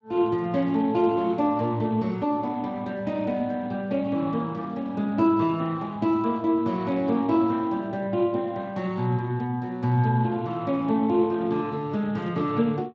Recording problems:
codec artefacts; Speex, log-spectral distance 2 dB

